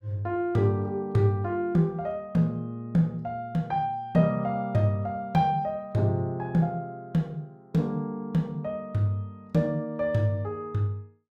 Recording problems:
none

